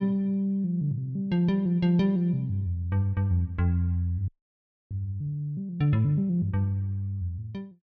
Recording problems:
frozen audio; at 4.5 s for 0.5 s

